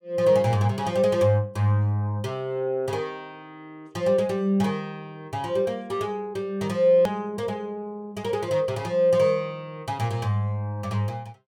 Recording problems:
edit click; at 7 s

